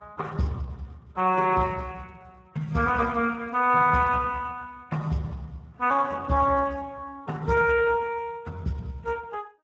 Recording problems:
codec artefacts; MP3, then Speex, log-spectral distance 3 dB

